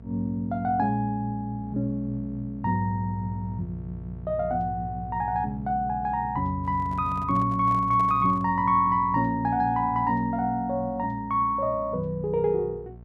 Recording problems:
hum; 60 Hz, harmonics up to 720 Hz, SNR 16 dB
microphone handling noise; from 6.5 to 8.5 s; peak -11 dB vs average level

